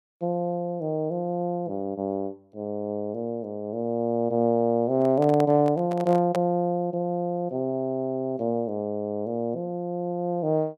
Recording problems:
microphone handling noise; from 5 to 6.5 s; peak -2 dB vs average level

